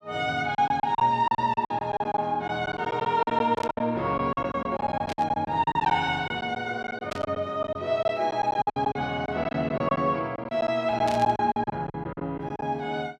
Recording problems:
lost packets; 15% of the sound replaced, filled with silence
burst of static; 4 times, first at 3.5 s; peak -5 dB vs average level

